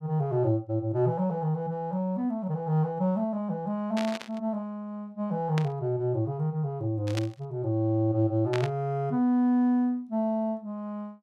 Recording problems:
burst of static; 4 times, first at 4 s; peak -1 dB vs average level

